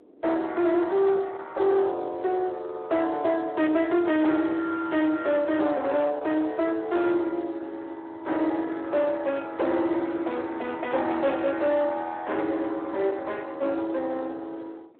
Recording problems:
phone line; 280 Hz to 3.8 kHz, Speex
distorted audio; soft clipping, signal-to-distortion ratio 12 dB
wind on the microphone; below 980 Hz, SNR 20 dB

